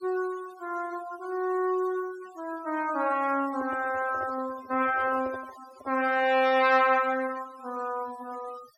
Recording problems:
noise reduction artefacts; signal-to-artefact ratio 20 dB
microphone handling noise; from 3.5 to 6 s; peak -12 dB vs average level

